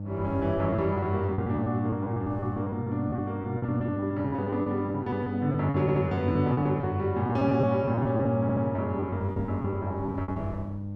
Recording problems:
hum; 50 Hz, harmonics up to 600 Hz, SNR 7 dB
wind on the microphone; below 180 Hz, SNR 17 dB
lost packets; 15% of the sound replaced, filled with repeated pitch periods
audio stuttering; at 6 s and at 8.5 s

